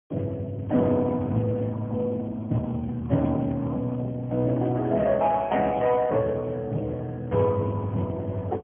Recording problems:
treble cut off; nothing above 3.3 kHz
lossy compression; Speex, log-spectral distance 3 dB

